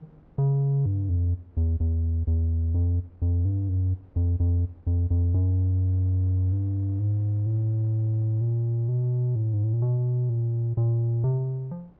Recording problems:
wind on the microphone; below 400 Hz, SNR 32 dB

